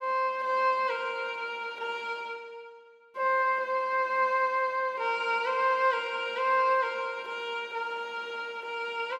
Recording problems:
none

